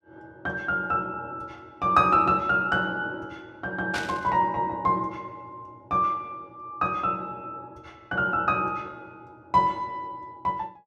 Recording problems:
burst of static; at 4 s; peak -3 dB vs average level

